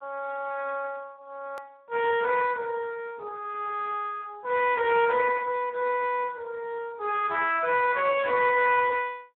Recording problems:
telephone audio; 340 Hz to 3.7 kHz, Speex
click at an edit; at 1.5 s

